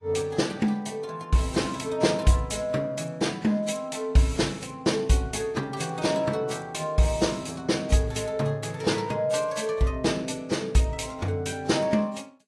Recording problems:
codec artefacts; AAC, log-spectral distance 3 dB, nothing above 11 kHz

